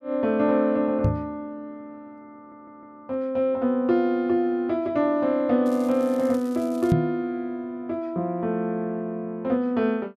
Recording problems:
microphone thump; at 1 s and at 7 s; peak +7 dB vs average level
stutter; at 2.5 s
crackle; from 5.5 to 7 s; loose cable, SNR 24 dB

